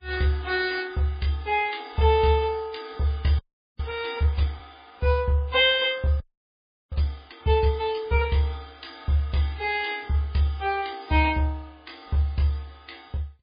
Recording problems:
lossy compression; MP3, log-spectral distance 3 dB, nothing above 4.1 kHz
frozen audio; at 3.5 s and at 6 s for 0.5 s

